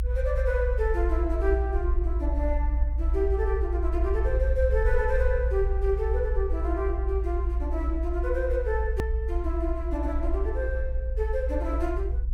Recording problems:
rumble; below 60 Hz, strongest tone 58 Hz, SNR -2 dB
edit click; at 9 s

